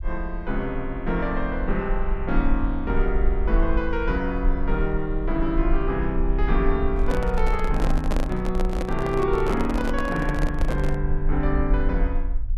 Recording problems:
low-frequency rumble; below 44 Hz, SNR 2 dB
handling noise; from 7 to 11 s; peak +2 dB vs average level

